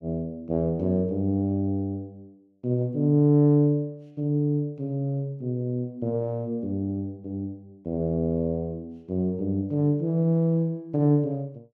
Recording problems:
none

